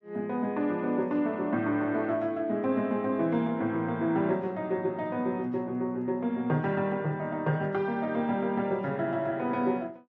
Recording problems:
none

